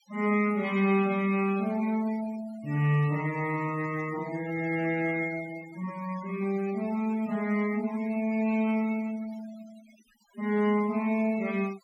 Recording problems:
noise reduction artefacts; signal-to-artefact ratio 19 dB

